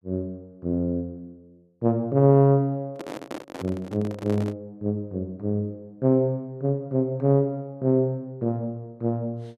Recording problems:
handling noise; from 3 to 4.5 s; peak -6 dB vs average level

